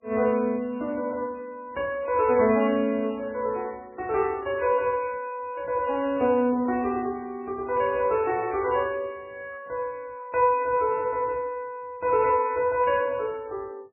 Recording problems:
codec artefacts; MP3, log-spectral distance 2 dB, nothing above 2.5 kHz

